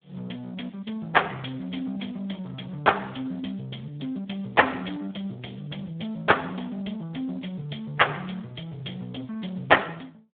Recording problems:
phone line; 170 Hz to 3.5 kHz, Speex

